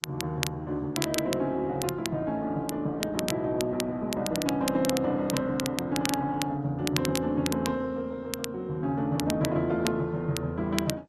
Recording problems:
codec artefacts; Opus, then G.722, log-spectral distance 2 dB
crackling; vinyl, SNR 7 dB

